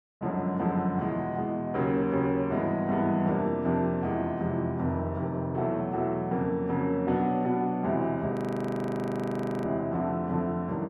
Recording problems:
audio freezing; at 8.5 s for 1.5 s

